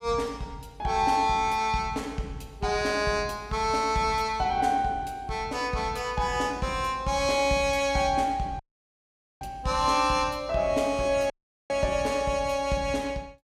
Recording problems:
audio cutting out; at 8.5 s for 1 s and at 11 s

